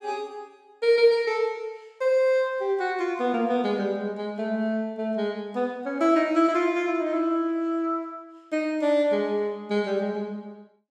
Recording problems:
none

